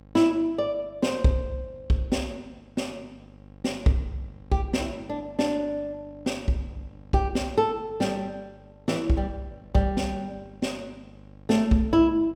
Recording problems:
hum; 50 Hz, harmonics up to 1.1 kHz, SNR 23 dB

